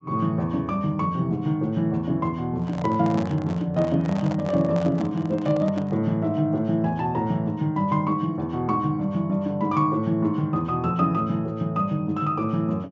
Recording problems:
low-pass filter; nothing above 8 kHz
microphone handling noise; from 2.5 to 6 s; peak -5 dB vs average level

